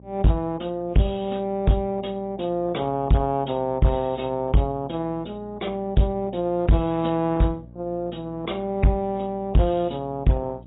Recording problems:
codec artefacts; AAC, log-spectral distance 3 dB, nothing above 3.8 kHz
distortion; hard clipping, signal-to-distortion ratio 11 dB
hum; 60 Hz, harmonics up to 660 Hz, SNR 21 dB

